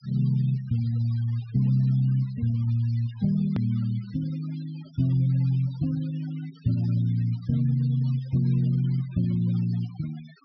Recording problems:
low-pass filter; nothing above 5.5 kHz
noise reduction artefacts; signal-to-artefact ratio 26 dB
edit click; at 3.5 s

